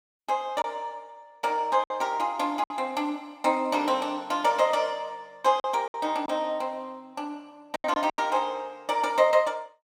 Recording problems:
packet loss; 5% of the sound replaced, filled with silence

